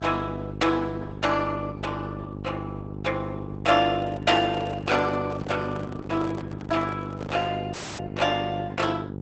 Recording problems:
lossy codec; Opus, log-spectral distance 4 dB, nothing above 8 kHz
hum; 50 Hz, harmonics up to 850 Hz, SNR 8 dB
microphone handling noise; from 4 to 7.5 s; peak -7 dB vs average level
dropout; at 7.5 s

